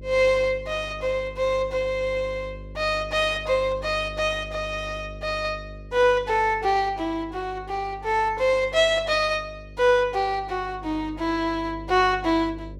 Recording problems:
hum; 50 Hz, harmonics up to 600 Hz, SNR 17 dB

